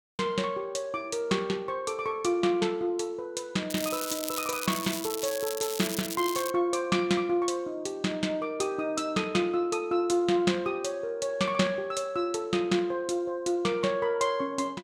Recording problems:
crackle; from 3.5 to 6.5 s; loose cable, SNR 6 dB

